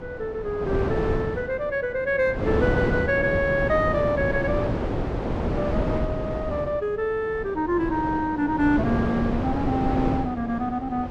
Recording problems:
wind on the microphone; below 510 Hz, SNR 2 dB

